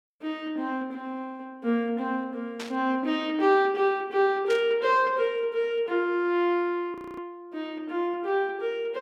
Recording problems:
burst of static; at 2.5 s and at 4.5 s; peak -7 dB vs average level
audio freezing; at 7 s

